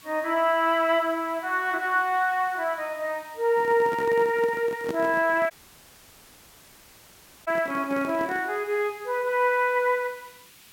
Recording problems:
background hiss; SNR 24 dB
handling noise; from 3.5 to 8.5 s; peak -4 dB vs average level
audio cutting out; at 5.5 s for 2 s

